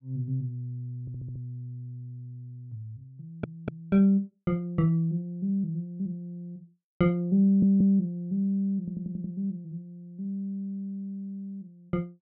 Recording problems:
stutter; 4 times, first at 1 s

